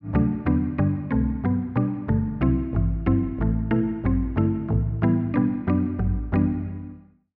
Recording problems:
none

